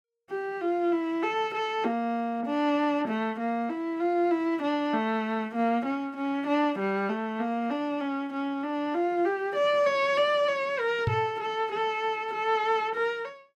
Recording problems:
microphone thump; at 11 s; peak +3 dB vs average level

